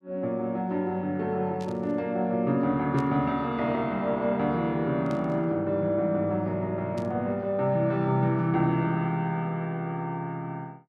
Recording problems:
burst of static; 4 times, first at 1.5 s; peak -15 dB vs average level

